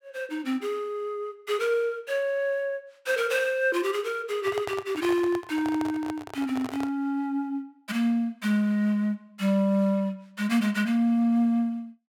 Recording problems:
microphone handling noise; from 4.5 to 7 s; peak -4 dB vs average level

